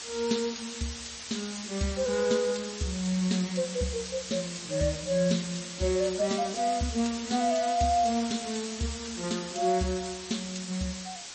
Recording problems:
lossy compression; MP3, log-spectral distance 16 dB, nothing above 8.2 kHz
background hiss; slope +2 dB per octave, SNR 8 dB

